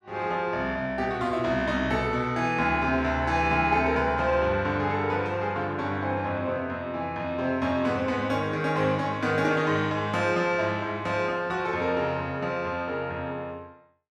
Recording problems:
none

